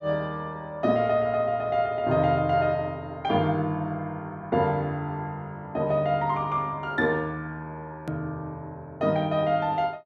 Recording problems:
hard cut with a click; at 8 s

